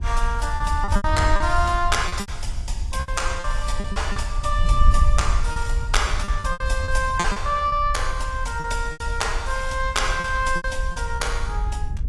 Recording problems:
lossy compression; AAC, log-spectral distance 2 dB, nothing above 11 kHz
wind noise; below 62 Hz, SNR 2 dB
packet loss; 10% of the sound replaced, filled with repeated pitch periods

